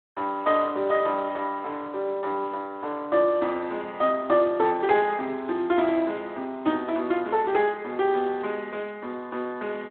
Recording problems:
phone line; 220 Hz to 3.6 kHz, Speex

